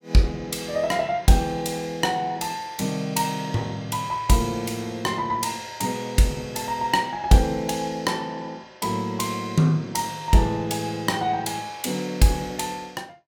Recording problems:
none

